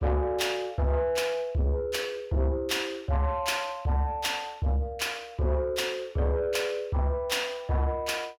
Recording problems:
distorted audio; soft clipping, signal-to-distortion ratio 10 dB

